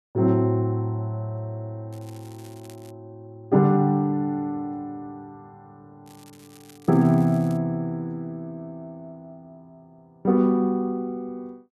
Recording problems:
crackle; at 2 s and from 6 to 7.5 s; loose cable, SNR 28 dB

